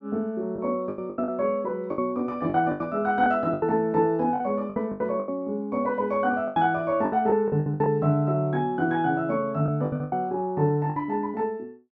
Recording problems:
lost packets; 12% of the sound replaced, filled with the last packet

